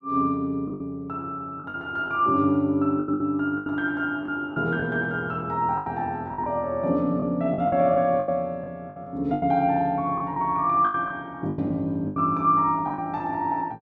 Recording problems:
packet loss; 10% of the sound replaced, filled with the last packet

